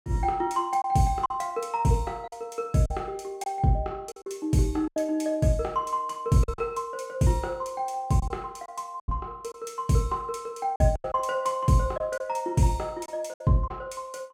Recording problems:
lost packets; 6% of the sound replaced, filled with silence

